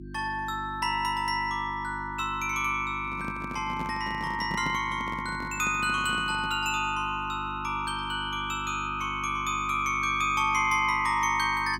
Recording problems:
hum; 50 Hz, harmonics up to 350 Hz, SNR 14 dB
handling noise; from 3 to 6.5 s; peak -4 dB vs average level

